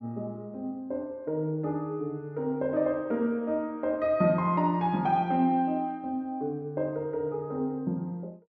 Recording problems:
none

